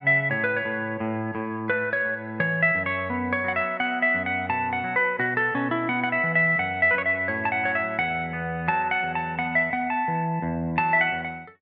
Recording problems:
treble missing; nothing above 5.9 kHz

